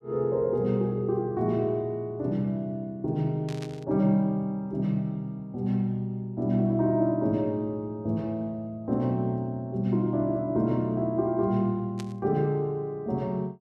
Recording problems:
static burst; at 3.5 s and at 12 s; peak -10 dB vs average level

